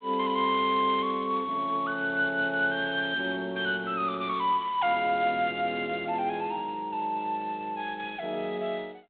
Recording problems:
telephone audio; 150 Hz to 4 kHz, G.726

